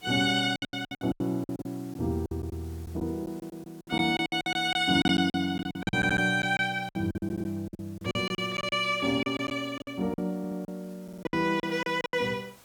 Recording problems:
hiss; slope -2 dB per octave, SNR 27 dB
lost packets; 17% of the sound replaced, filled with silence
audio stuttering; 4 times, first at 6 s

